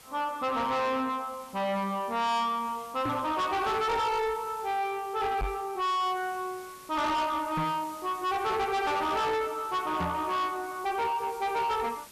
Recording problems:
distortion; soft clipping, signal-to-distortion ratio 8 dB
background hiss; slope -1 dB per octave, SNR 21 dB
knock on the microphone; 4 times, first at 3 s; peak +1 dB vs average level

